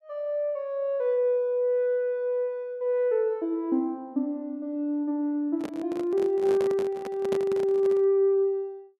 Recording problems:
handling noise; from 5.5 to 8 s; peak -3 dB vs average level

